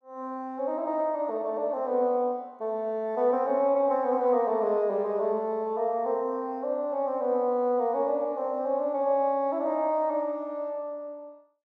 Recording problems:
none

